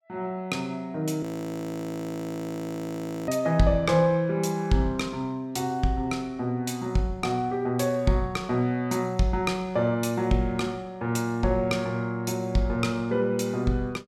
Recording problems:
audio freezing; at 1 s for 2 s

